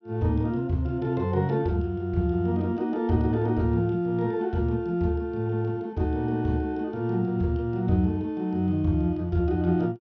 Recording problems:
treble cut off; nothing above 6.5 kHz

